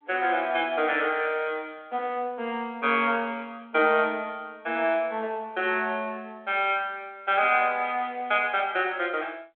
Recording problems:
phone line; 280 Hz to 3.4 kHz, G.726

